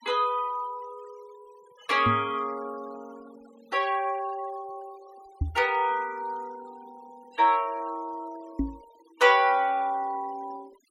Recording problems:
noise reduction artefacts; signal-to-artefact ratio 25 dB
microphone thump; at 2 s, at 5.5 s and at 8.5 s; peak +2 dB vs average level

